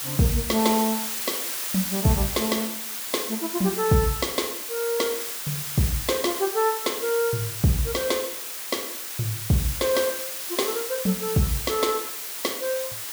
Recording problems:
background hiss; slope +1 dB per octave, SNR 3 dB

